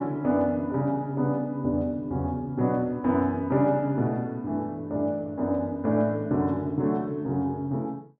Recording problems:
none

